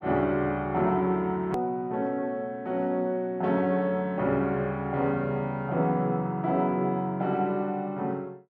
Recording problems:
edit click; at 1.5 s

